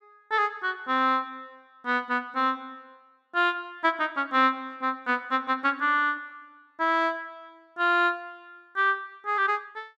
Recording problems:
none

